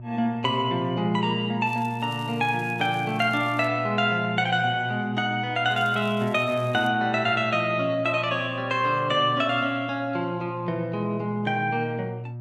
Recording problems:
hum; 60 Hz, harmonics up to 600 Hz, SNR 12 dB
crackle; from 1.5 to 3.5 s and from 5.5 to 7 s; loose cable, SNR 27 dB

